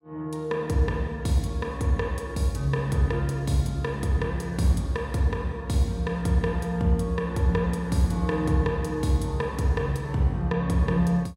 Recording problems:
none

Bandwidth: 17 kHz